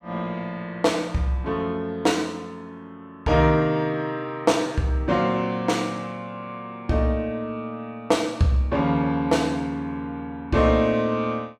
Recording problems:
none

